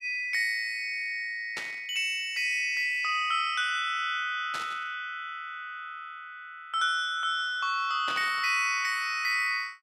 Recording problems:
burst of static; at 1.5 s, at 4.5 s and at 8 s; peak -4 dB vs average level

